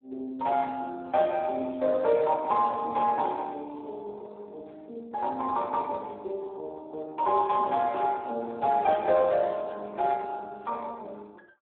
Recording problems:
telephone audio; 240 Hz to 3.8 kHz, Speex

